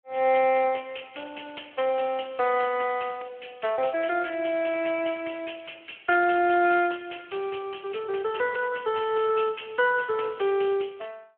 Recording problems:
telephone audio; 320 Hz to 3.2 kHz, Speex

